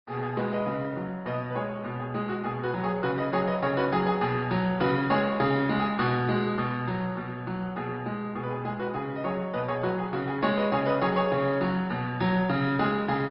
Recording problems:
treble missing; nothing above 5.2 kHz
codec artefacts; Opus, log-spectral distance 3 dB

